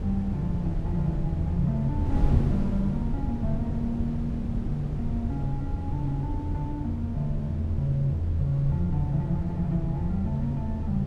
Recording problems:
wind noise; below 140 Hz, SNR 3 dB

